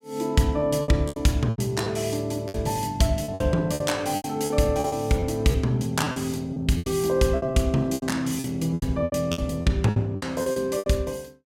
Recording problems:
lost packets; 15% of the sound replaced, filled with repeated pitch periods

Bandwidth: 16.5 kHz